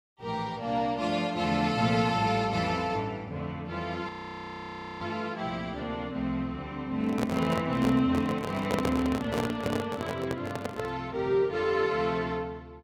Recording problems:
audio freezing; at 4 s for 1 s
microphone handling noise; from 7 to 11 s; peak +4 dB vs average level

